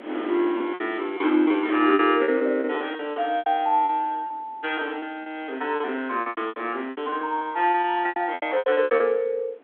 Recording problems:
telephone audio; 220 Hz to 3.5 kHz, G.726
wind noise; below 1.1 kHz, SNR 22 dB
packet loss; 17% of the sound replaced, filled with repeated pitch periods

